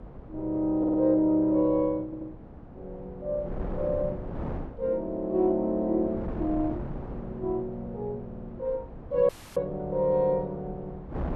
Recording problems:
wind on the microphone; below 400 Hz, SNR 13 dB
stutter; at 1 s, at 2 s and at 8.5 s
audio cutting out; at 9.5 s

